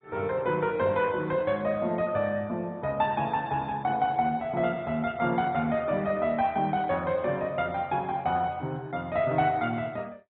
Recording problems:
treble missing; nothing above 4 kHz
codec artefacts; MP2, log-spectral distance 2 dB

